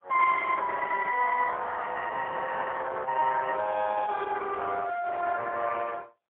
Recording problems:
telephone audio; 370 Hz to 3.1 kHz, AMR-NB, then MP3

